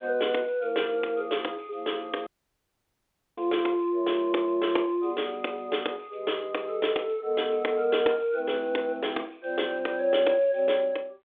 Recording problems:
phone line; 280 Hz to 3.6 kHz, G.726
audio cutting out; at 2.5 s for 1 s

